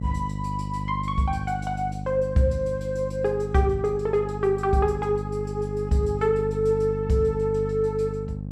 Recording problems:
electrical hum; 50 Hz, harmonics up to 550 Hz, SNR 7 dB

